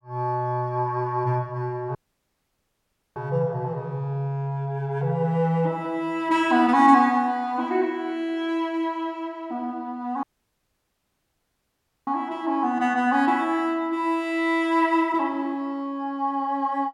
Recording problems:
audio cutting out; at 2 s for 1 s and at 10 s for 2 s

